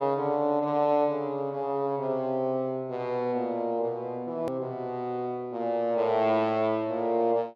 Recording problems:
edit click; at 4.5 s

